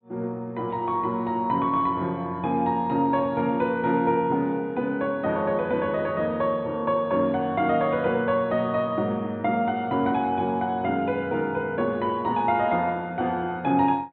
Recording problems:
treble cut off; nothing above 4 kHz

